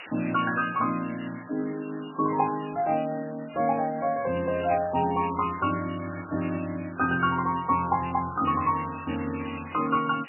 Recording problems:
lossy compression; MP3, log-spectral distance 20 dB, nothing above 2.4 kHz
hiss; SNR 15 dB

